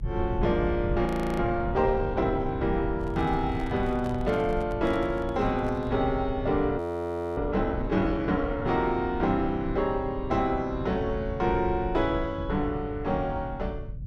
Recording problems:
low-frequency rumble; below 110 Hz, SNR 9 dB
audio freezing; at 1 s and at 7 s for 0.5 s
microphone handling noise; from 3 to 6 s; peak -9 dB vs average level

